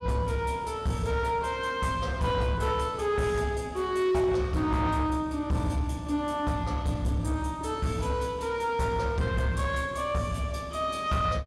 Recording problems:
distorted audio; soft clipping, signal-to-distortion ratio 12 dB

